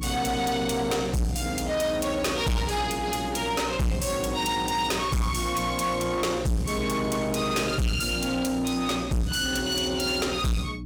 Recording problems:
distorted audio; soft clipping, signal-to-distortion ratio 6 dB
electrical hum; 60 Hz, harmonics up to 300 Hz, SNR 11 dB

